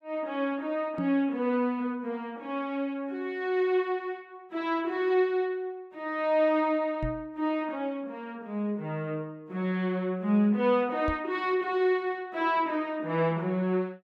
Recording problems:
microphone thump; at 1 s, at 7 s and at 11 s; peak -2 dB vs average level

